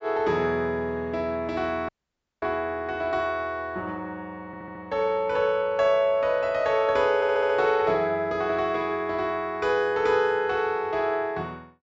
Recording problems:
treble cut off; nothing above 8 kHz
dropout; at 2 s for 0.5 s
stutter; at 4.5 s and at 7 s

